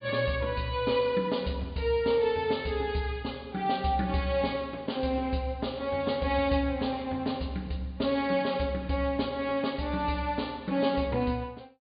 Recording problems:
low-pass filter; nothing above 4.9 kHz

